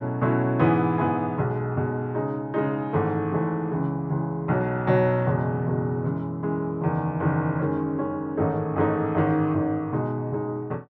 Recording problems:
none

